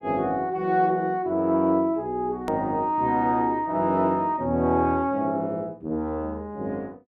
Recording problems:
click at an edit; at 2.5 s

